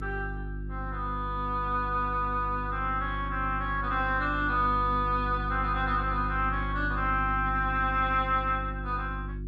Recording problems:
codec artefacts; Opus, log-spectral distance 2 dB
hum; 50 Hz, harmonics up to 350 Hz, SNR 7 dB

